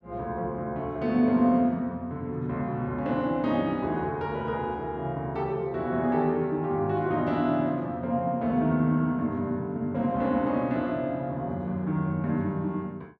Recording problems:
none

